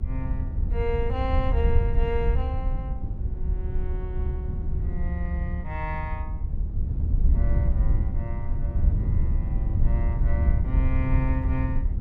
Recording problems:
low-frequency rumble; below 76 Hz, SNR -7 dB

